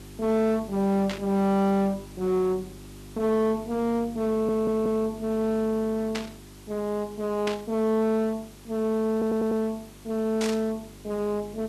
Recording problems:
distorted audio; hard clipping, uneven, signal-to-distortion ratio 9 dB
hum; 50 Hz, harmonics up to 400 Hz, SNR 20 dB
hiss; slope -2 dB per octave, SNR 24 dB
burst of static; 4 times, first at 1 s; peak -2 dB vs average level
stutter; at 4.5 s and at 9 s

